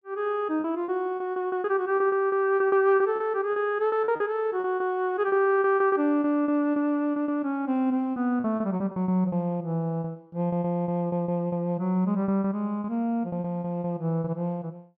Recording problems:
packet loss; 14% of the sound replaced, filled with repeated pitch periods

